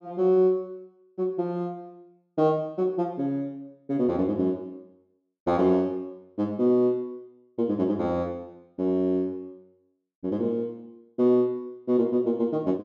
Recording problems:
none

